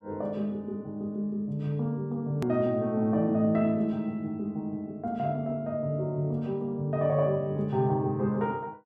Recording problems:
click at an edit; at 2.5 s

